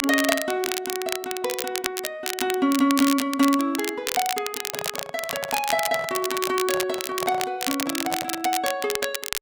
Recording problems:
crackling; vinyl, SNR 4 dB
handling noise; from 4.5 to 8.5 s; peak -3 dB vs average level

